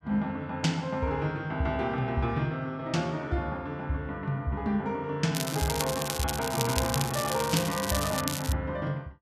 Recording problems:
crackling; from 5.5 to 8.5 s; loose cable, SNR 3 dB

